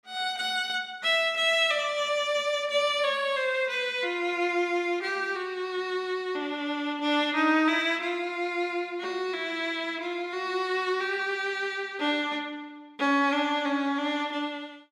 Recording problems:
none

